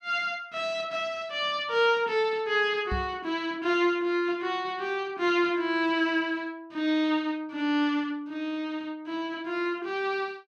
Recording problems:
knock on the microphone; at 3 s; peak -2 dB vs average level

